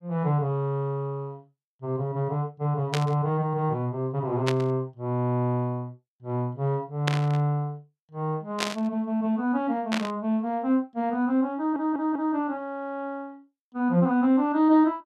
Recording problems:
burst of static; 5 times, first at 3 s; peak +3 dB vs average level
audio stuttering; at 12 s

